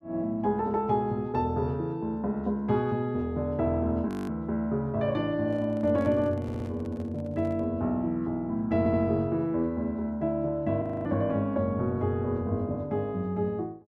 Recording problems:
audio freezing; at 4 s and at 11 s
microphone handling noise; from 5.5 to 7.5 s; peak -12 dB vs average level
stutter; at 6.5 s and at 9 s

